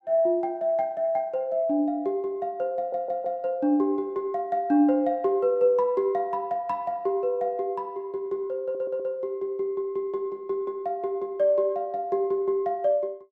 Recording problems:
stutter; at 3 s and at 8.5 s

